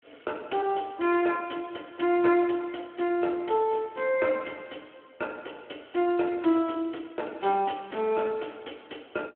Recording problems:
phone line; 260 Hz to 3.2 kHz, Speex

